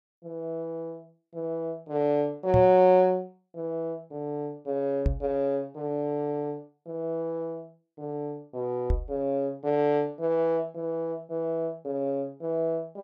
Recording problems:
microphone thump; at 2.5 s, at 5 s and at 9 s; peak +5 dB vs average level

